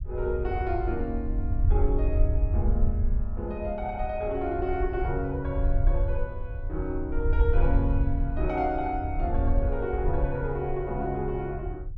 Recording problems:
low-frequency rumble; below 70 Hz, SNR -1 dB

